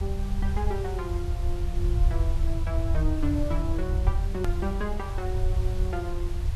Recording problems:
hiss; slope -3 dB per octave, SNR 13 dB
low-frequency rumble; below 80 Hz, SNR -5 dB
click at an edit; at 4.5 s

